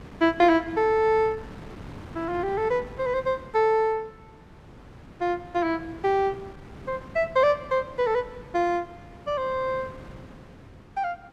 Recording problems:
wind noise; below 580 Hz, SNR 19 dB

